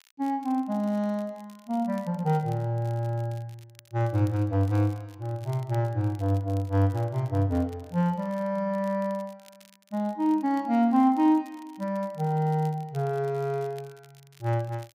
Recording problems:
crackling; vinyl, SNR 29 dB

